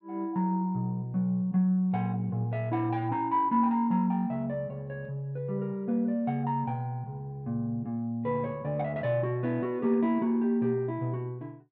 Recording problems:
none

